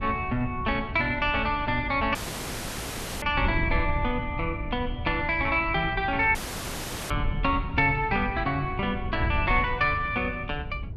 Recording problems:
wind noise; below 110 Hz, SNR 8 dB
audio cutting out; at 2 s for 1 s and at 6.5 s for 1 s

